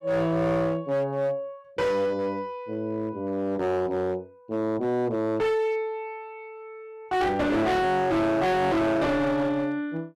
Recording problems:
distortion; hard clipping, uneven, signal-to-distortion ratio 7 dB

